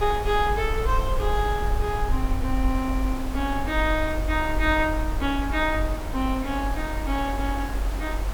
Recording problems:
hiss; slope -6 dB per octave, SNR 10 dB
rumble; below 50 Hz, strongest tone 46 Hz, SNR 3 dB

